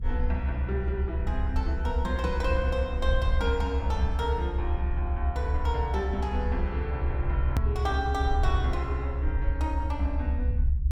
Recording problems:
rumble; below 72 Hz, strongest tone 64 Hz, SNR -3 dB
edit click; at 7.5 s

